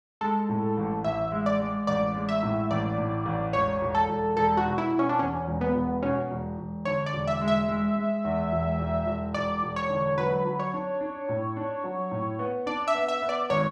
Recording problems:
none

